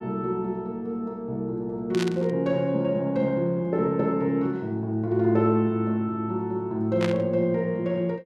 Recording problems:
static burst; at 2 s and at 7 s; peak -3 dB vs average level

